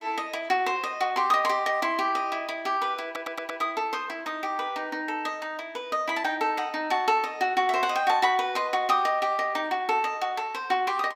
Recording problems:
stutter; at 3 s

